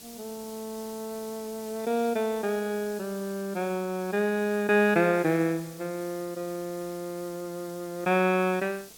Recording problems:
background hiss; SNR 18 dB

